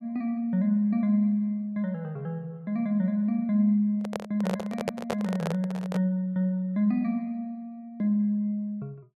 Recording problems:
microphone handling noise; from 4 to 6 s; peak +2 dB vs average level

